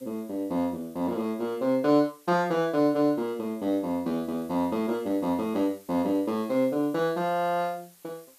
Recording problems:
background hiss; slope 0 dB per octave, SNR 27 dB

